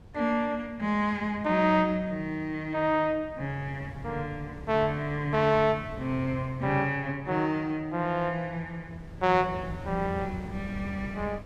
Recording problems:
wind noise; below 240 Hz, SNR 16 dB

